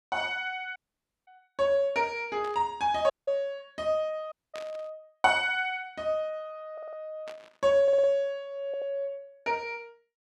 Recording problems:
audio cutting out; at 1 s for 0.5 s, at 3 s and at 4.5 s
burst of static; at 2.5 s, at 4.5 s and at 7.5 s; peak -11 dB vs average level
stutter; at 6.5 s, at 8 s and at 8.5 s

